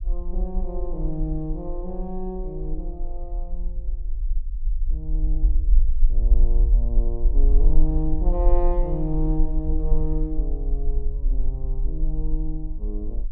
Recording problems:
rumble; below 42 Hz, strongest tone 20 Hz, SNR -6 dB

